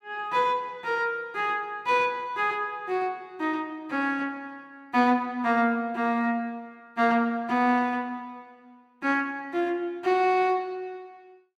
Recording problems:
none

